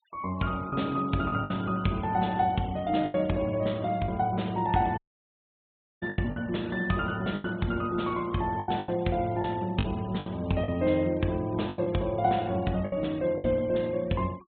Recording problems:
treble cut off; nothing above 4 kHz
denoising artefacts; signal-to-artefact ratio 25 dB
packet loss; 8% of the sound replaced, filled with the last packet
dropout; at 5 s for 1 s

